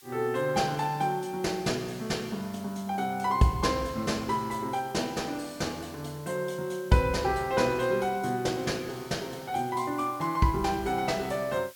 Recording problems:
hiss; slope +4 dB per octave, SNR 22 dB

